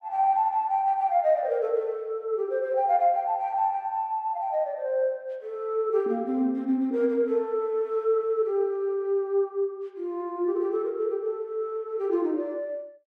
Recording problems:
none

